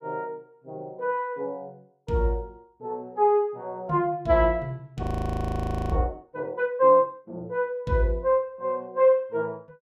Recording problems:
audio freezing; at 5 s for 1 s

